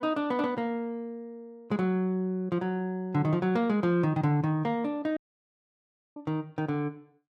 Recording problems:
audio cutting out; at 5 s for 1 s

